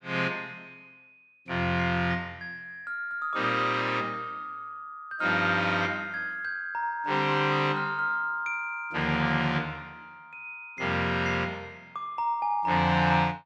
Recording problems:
none

